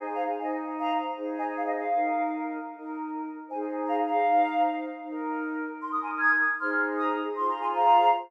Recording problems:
none

